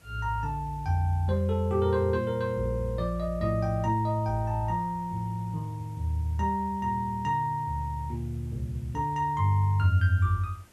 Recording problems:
background hiss; slope -3 dB per octave, SNR 29 dB

